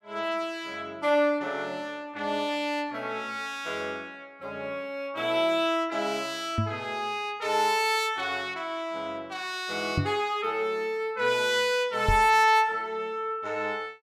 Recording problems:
knock on the microphone; at 6.5 s, at 10 s and at 12 s; peak +4 dB vs average level

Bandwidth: 16.5 kHz